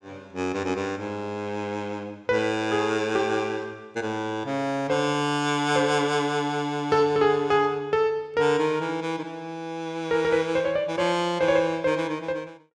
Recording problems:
none

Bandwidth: 16 kHz